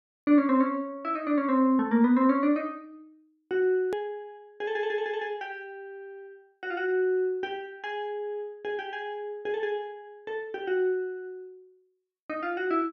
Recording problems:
click at an edit; at 4 s

